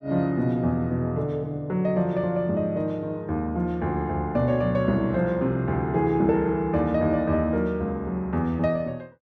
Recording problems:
none

